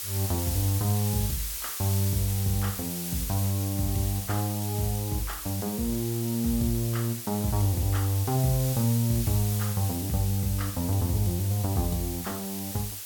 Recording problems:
hiss; slope +2 dB per octave, SNR 6 dB

